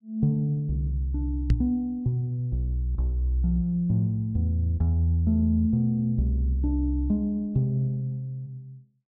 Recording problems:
knock on the microphone; at 1.5 s; peak +8 dB vs average level

